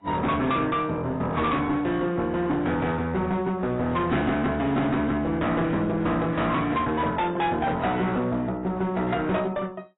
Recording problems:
codec artefacts; AAC, log-spectral distance 2 dB, nothing above 3.8 kHz
distorted audio; hard clipping, uneven, signal-to-distortion ratio 7 dB

